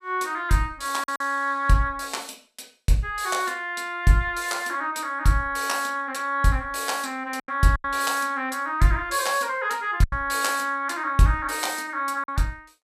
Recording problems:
lost packets; 3% of the sound replaced, filled with silence

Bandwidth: 14.5 kHz